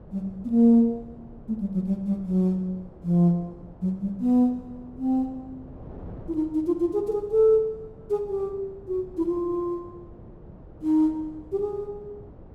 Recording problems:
wind on the microphone; below 370 Hz, SNR 21 dB

